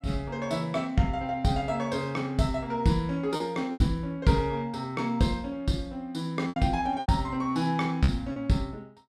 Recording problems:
packet loss; 4% of the sound replaced, filled with repeated pitch periods

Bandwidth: 14.5 kHz